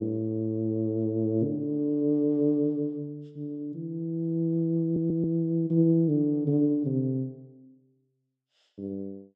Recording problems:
stutter; at 5 s

